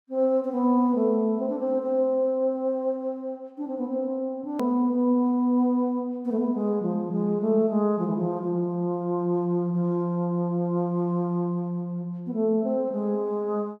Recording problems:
edit click; at 4.5 s

